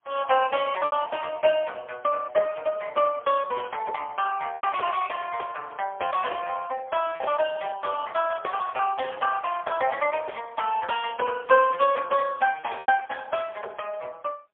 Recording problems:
telephone audio; 370 Hz to 3.2 kHz, AMR-NB, then MP3
lost packets; 3% of the sound replaced, filled with repeated pitch periods

